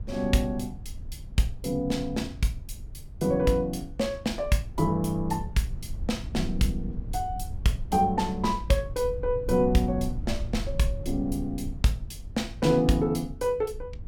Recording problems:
low-frequency rumble; below 82 Hz, SNR 11 dB

